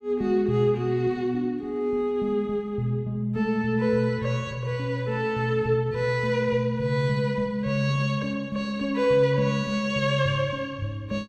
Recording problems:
none

